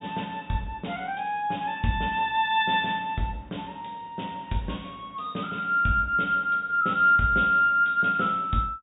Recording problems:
treble missing; nothing above 4 kHz

